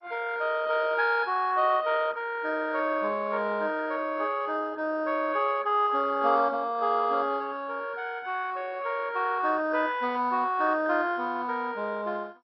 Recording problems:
lossy codec; MP2, log-spectral distance 4 dB, nothing above 4.6 kHz

